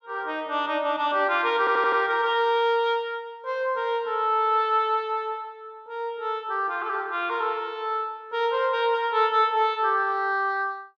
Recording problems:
audio stuttering; at 1.5 s

